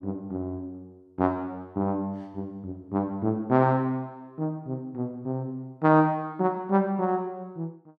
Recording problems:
none

